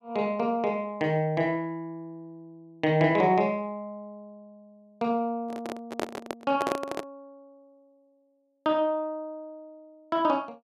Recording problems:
handling noise; from 5.5 to 7 s; peak +2 dB vs average level

